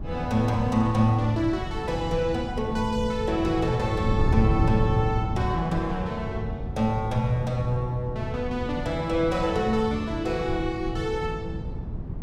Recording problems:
wind on the microphone; below 150 Hz, SNR 5 dB

